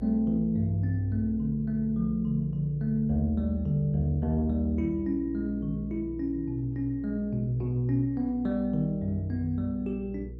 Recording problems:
mains hum; 60 Hz, harmonics up to 480 Hz, SNR 14 dB

